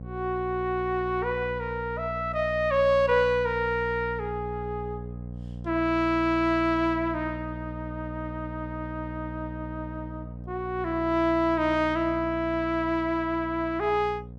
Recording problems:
hum; 60 Hz, harmonics up to 720 Hz, SNR 11 dB

